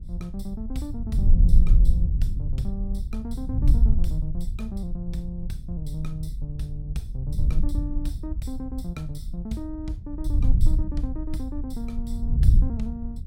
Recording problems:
wind on the microphone; below 64 Hz, SNR -8 dB

